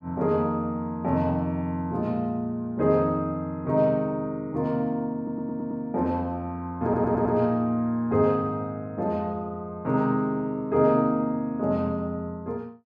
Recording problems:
stutter; at 5 s and at 7 s

